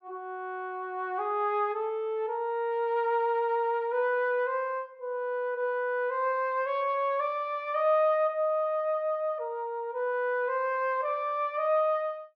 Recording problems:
none

